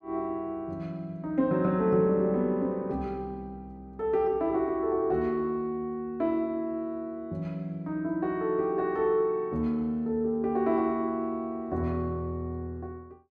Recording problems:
none

